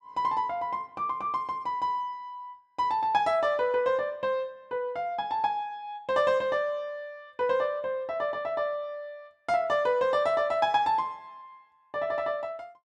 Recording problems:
none

